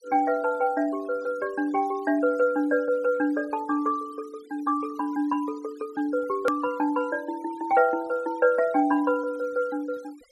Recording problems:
noise reduction artefacts; signal-to-artefact ratio 24 dB
click at an edit; at 6.5 s

